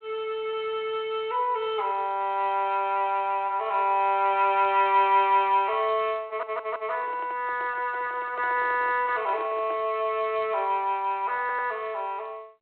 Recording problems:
telephone audio; 280 Hz to 3.4 kHz, G.726
stutter; at 6.5 s and at 11 s
microphone handling noise; from 7 to 10 s; peak -11 dB vs average level

